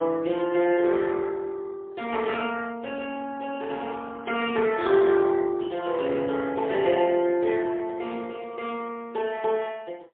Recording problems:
phone line; 240 Hz to 3.5 kHz, AMR-NB, then MP3

